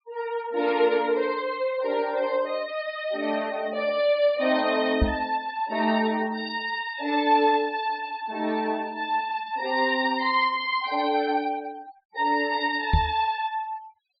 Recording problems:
treble cut off; nothing above 4.9 kHz
denoising artefacts; signal-to-artefact ratio 21 dB
microphone thump; at 5 s and at 13 s; peak +6 dB vs average level

